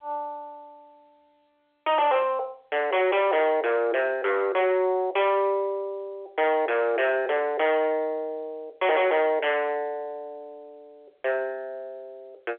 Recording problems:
phone line; 320 Hz to 3.5 kHz, G.711
distortion; soft clipping, signal-to-distortion ratio 7 dB

